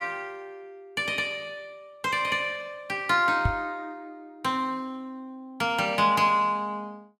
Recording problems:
microphone thump; at 3.5 s; peak +4 dB vs average level

